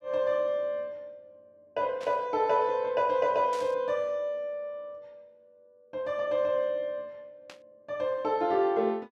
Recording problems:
burst of static; at 2 s, at 3.5 s and at 7.5 s; peak -11 dB vs average level

